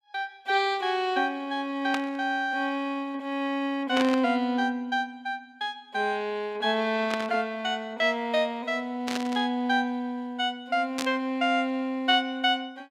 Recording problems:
static burst; 5 times, first at 2 s; peak 0 dB vs average level

